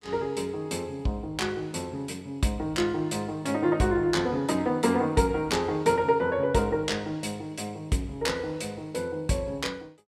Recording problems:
none

